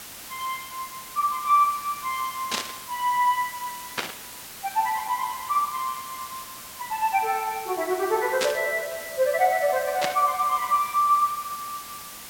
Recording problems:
hiss; slope 0 dB per octave, SNR 13 dB
static burst; 4 times, first at 2.5 s; peak +3 dB vs average level

